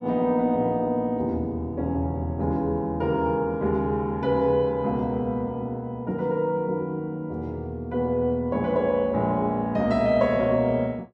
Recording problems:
none

